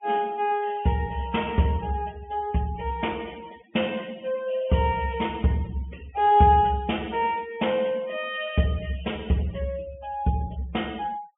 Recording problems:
treble cut off; nothing above 3.4 kHz
denoising artefacts; signal-to-artefact ratio 22 dB

